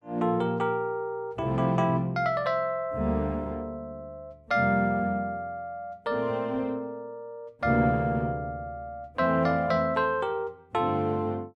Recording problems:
none

